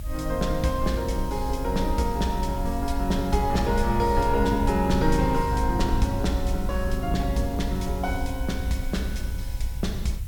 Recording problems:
background hiss; SNR 20 dB
rumble; below 66 Hz, SNR 4 dB

